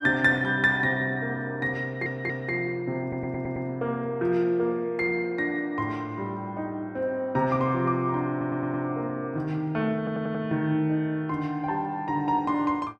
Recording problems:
audio stuttering; 4 times, first at 2 s

